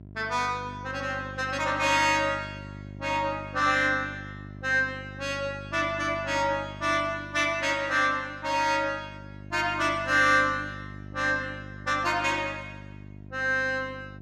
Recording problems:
electrical hum; 50 Hz, harmonics up to 700 Hz, SNR 16 dB

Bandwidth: 14.5 kHz